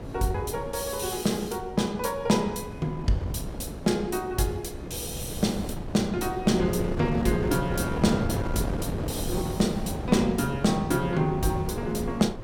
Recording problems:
wind on the microphone; below 390 Hz, SNR 6 dB

